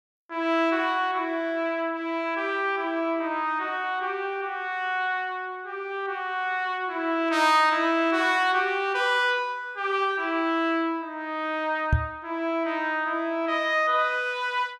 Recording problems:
knock on the microphone; at 12 s; peak +6 dB vs average level

